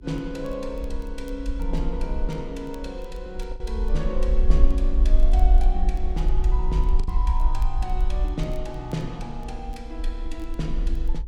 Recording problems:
hum; 50 Hz, harmonics up to 400 Hz, SNR 22 dB
low-frequency rumble; below 48 Hz, strongest tone 22 Hz, SNR -7 dB
crackle; vinyl, SNR 26 dB
packet loss; 1.4% of the sound replaced, filled with the last packet

